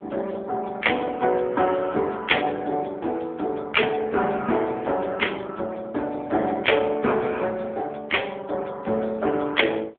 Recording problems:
telephone audio; 240 Hz to 3.4 kHz, AMR-NB

